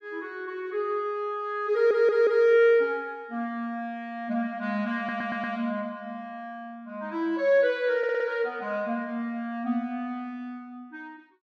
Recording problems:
stutter; at 1.5 s, at 5 s and at 8 s

